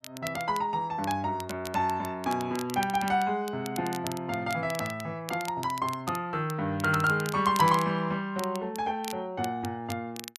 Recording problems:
crackling; vinyl, SNR 14 dB

